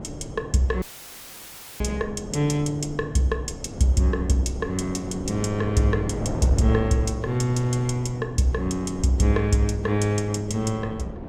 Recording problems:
wind on the microphone; below 430 Hz, SNR 11 dB
audio cutting out; at 1 s for 1 s; filled with static

